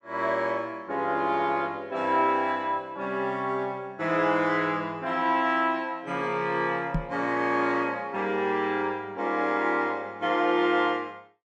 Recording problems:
microphone thump; at 7 s; peak +2 dB vs average level

